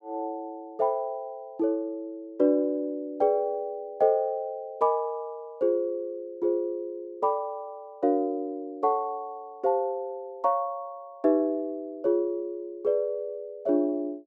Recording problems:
none

